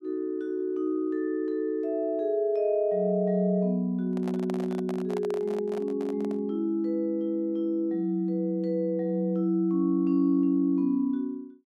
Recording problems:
handling noise; from 4 to 6.5 s; peak -8 dB vs average level

